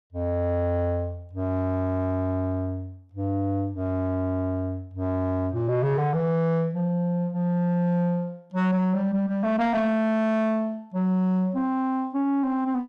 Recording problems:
distortion; soft clipping, signal-to-distortion ratio 10 dB

